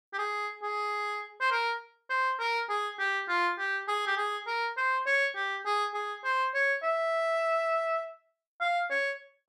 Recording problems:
none

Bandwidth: 13 kHz